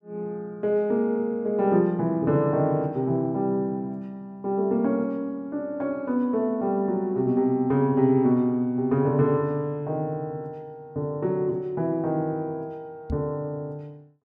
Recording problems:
microphone bump; at 13 s; peak -2 dB vs average level

